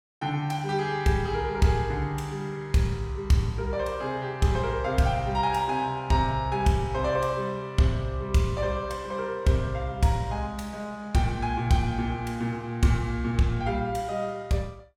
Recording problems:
none

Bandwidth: 17 kHz